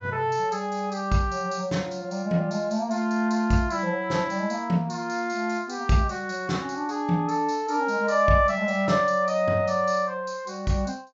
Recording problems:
treble cut off; nothing above 7.7 kHz

